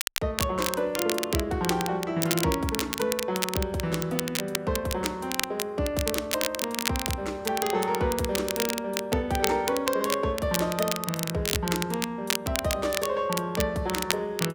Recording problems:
crackle; vinyl, SNR 3 dB

